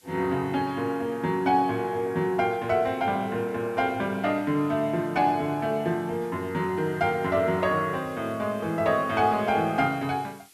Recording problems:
background hiss; SNR 28 dB

